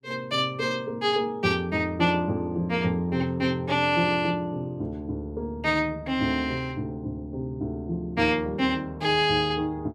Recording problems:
none

